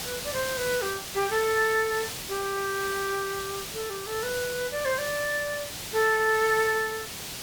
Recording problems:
background hiss; slope 0 dB per octave, SNR 7 dB

